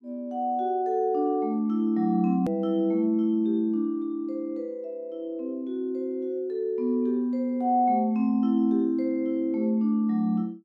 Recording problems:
hard cut with a click; at 2.5 s

